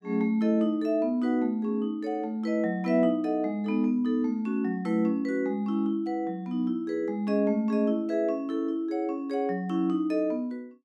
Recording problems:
none

